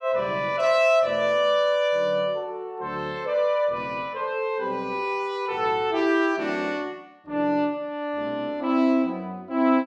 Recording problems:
none

